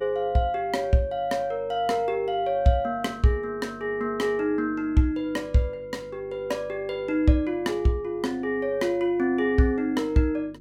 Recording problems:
hum; 50 Hz, harmonics up to 350 Hz, SNR 24 dB

